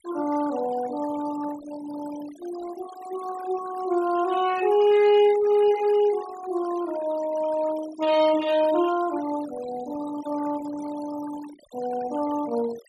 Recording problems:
noise reduction artefacts; signal-to-artefact ratio 16 dB

